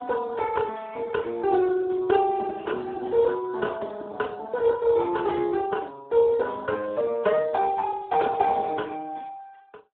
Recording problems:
phone line; 260 Hz to 2.1 kHz, Speex

